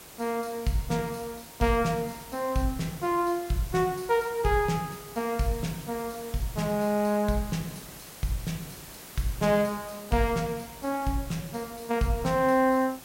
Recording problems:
hiss; slope -3 dB per octave, SNR 15 dB

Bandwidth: 16 kHz